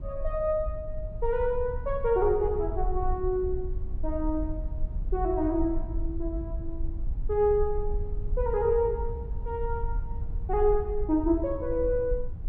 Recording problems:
low-frequency rumble; below 58 Hz, SNR 6 dB

